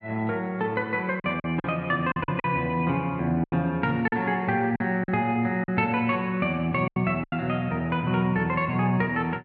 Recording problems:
packet loss; 7% of the sound replaced, filled with silence

